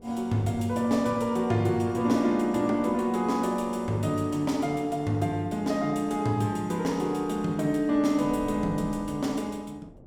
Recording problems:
wind noise; below 430 Hz, SNR 21 dB

